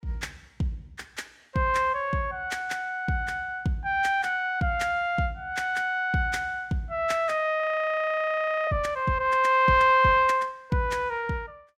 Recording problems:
audio freezing; at 7.5 s for 1 s

